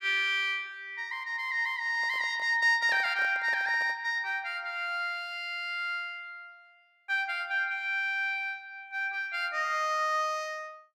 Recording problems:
microphone handling noise; from 2 to 4 s; peak -10 dB vs average level

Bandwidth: 14 kHz